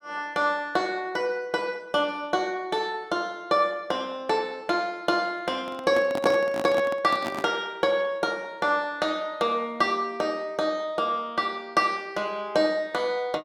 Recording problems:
microphone handling noise; from 5.5 to 7.5 s; peak -1 dB vs average level

